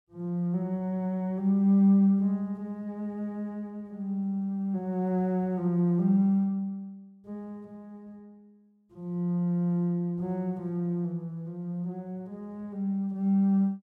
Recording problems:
none

